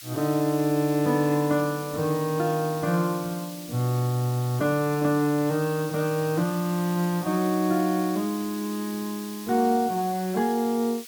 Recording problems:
background hiss; SNR 15 dB

